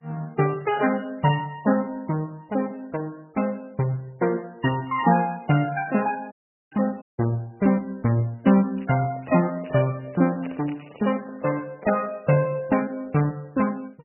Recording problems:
codec artefacts; MP2, then MP3, log-spectral distance 4 dB, nothing above 2.9 kHz
dropout; at 6.5 s and at 7 s
crackle; at 6.5 s and from 9 to 11 s; loose cable, SNR 27 dB
microphone handling noise; from 8.5 to 12 s; peak -13 dB vs average level

